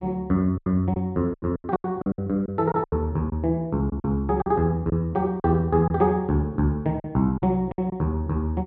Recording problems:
lost packets; 11% of the sound replaced, filled with silence

